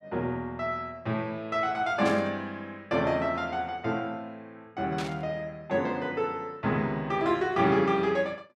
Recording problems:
static burst; at 2 s and at 5 s; peak -5 dB vs average level

